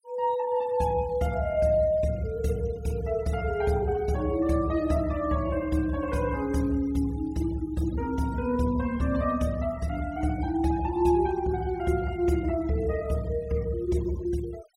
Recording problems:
denoising artefacts; signal-to-artefact ratio 21 dB

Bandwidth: 16 kHz